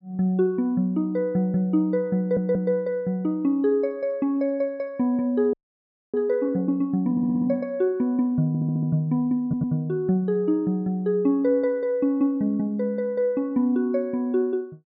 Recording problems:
audio stuttering; 4 times, first at 2 s
audio freezing; at 5.5 s for 0.5 s

